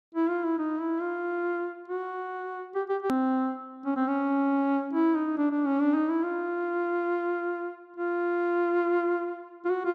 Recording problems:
hard cut with a click; at 3 s

